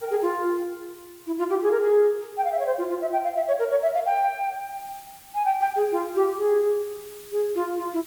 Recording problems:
background hiss; SNR 22 dB

